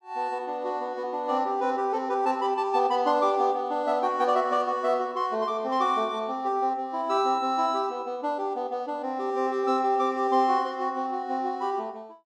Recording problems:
none

